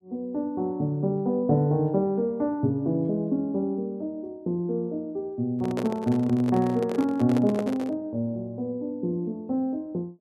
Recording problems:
microphone handling noise; from 5.5 to 8 s; peak -1 dB vs average level

